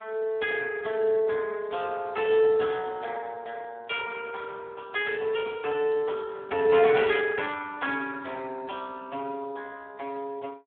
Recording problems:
phone line; 300 Hz to 3.5 kHz, Speex

